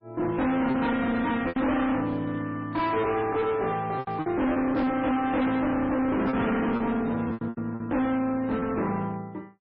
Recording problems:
codec artefacts; MP3, log-spectral distance 2 dB, nothing above 5.2 kHz
distortion; hard clipping, uneven, signal-to-distortion ratio 5 dB
lost packets; 7% of the sound replaced, filled with repeated pitch periods

